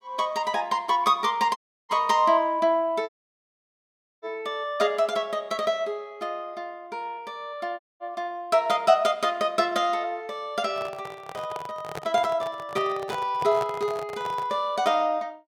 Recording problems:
dropout; at 1.5 s, at 3 s for 1 s and at 8 s
handling noise; from 11 to 15 s; peak -4 dB vs average level

